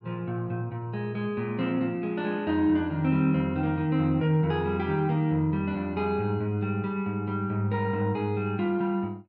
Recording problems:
none

